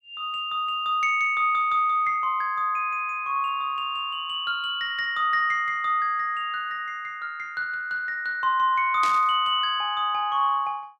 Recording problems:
static burst; at 9 s; peak -5 dB vs average level

